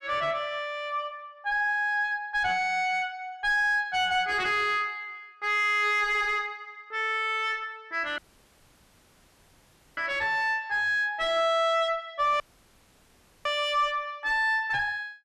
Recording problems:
distortion; soft clipping, signal-to-distortion ratio 9 dB
dropout; at 8 s for 2 s and at 12 s for 1 s

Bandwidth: 13 kHz